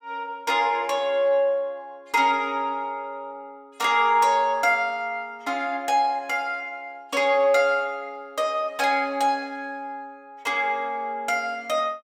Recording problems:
none

